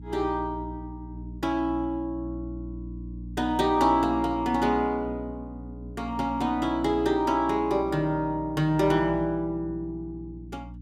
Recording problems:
hum; 60 Hz, harmonics up to 300 Hz, SNR 14 dB

